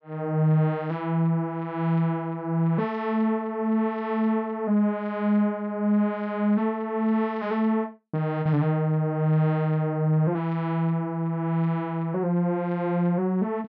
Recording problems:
none

